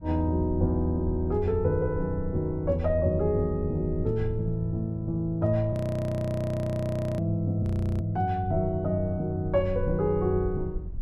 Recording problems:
rumble; below 78 Hz, SNR 13 dB
audio freezing; at 5.5 s for 1.5 s and at 7.5 s

